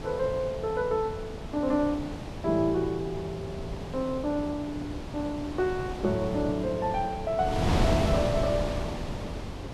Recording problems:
wind noise; below 590 Hz, SNR 4 dB

